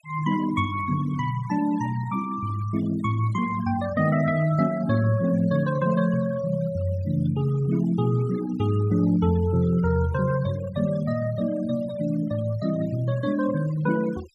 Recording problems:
denoising artefacts; signal-to-artefact ratio 19 dB

